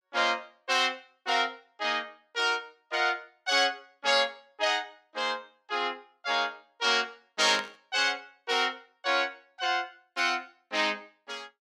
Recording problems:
static burst; at 7.5 s; peak -5 dB vs average level

